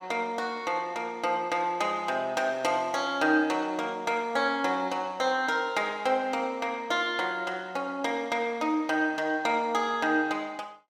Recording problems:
none

